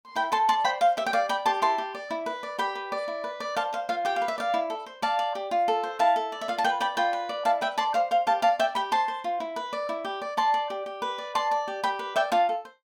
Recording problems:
none

